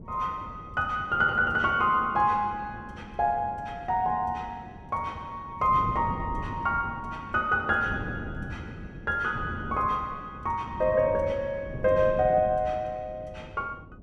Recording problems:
wind noise; below 270 Hz, SNR 14 dB

